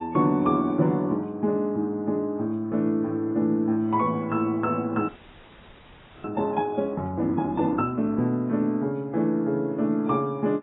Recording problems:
codec artefacts; AAC, log-spectral distance 3 dB, nothing above 3.6 kHz
audio freezing; at 5 s for 1 s

